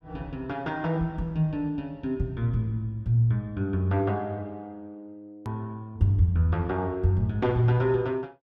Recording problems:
click at an edit; at 5.5 s

